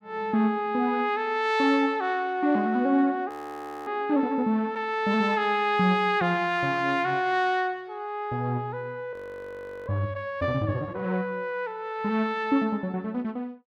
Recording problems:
audio freezing; at 3.5 s for 0.5 s and at 9 s for 0.5 s

